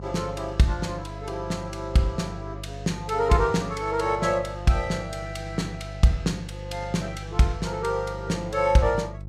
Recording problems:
hum; 50 Hz, harmonics up to 500 Hz, SNR 12 dB

